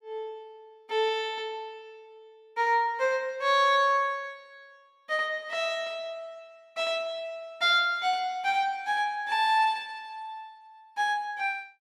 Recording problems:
none

